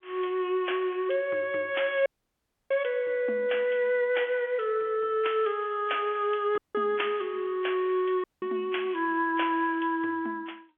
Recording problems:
telephone audio; 260 Hz to 3.4 kHz, G.711
dropout; at 2 s for 0.5 s, at 6.5 s and at 8 s

